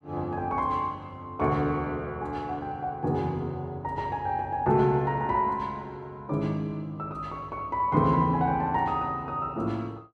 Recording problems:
none

